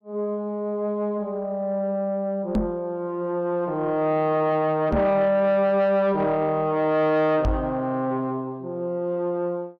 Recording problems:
distorted audio; soft clipping, signal-to-distortion ratio 10 dB
knock on the microphone; at 2.5 s, at 5 s and at 7.5 s; peak +4 dB vs average level

